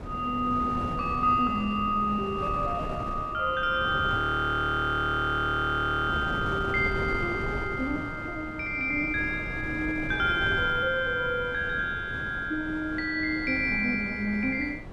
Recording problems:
wind on the microphone; below 470 Hz, SNR 9 dB
frozen audio; at 4 s for 2 s

